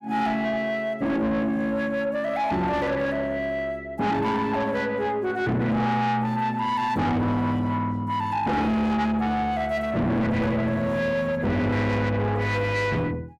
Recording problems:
distortion; soft clipping, signal-to-distortion ratio 7 dB

